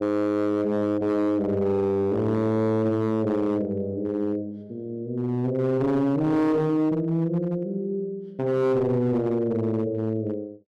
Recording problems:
distorted audio; hard clipping, uneven, signal-to-distortion ratio 10 dB

